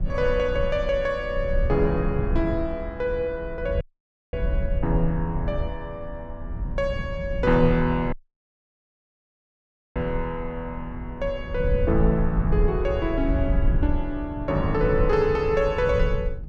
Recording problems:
rumble; below 82 Hz, SNR 4 dB
dropout; at 4 s for 0.5 s and at 8 s for 2 s

